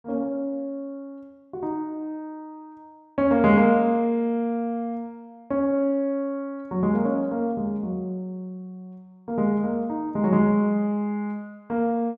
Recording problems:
none

